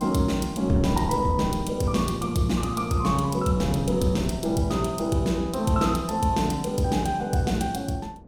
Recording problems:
wind noise; below 290 Hz, SNR 13 dB

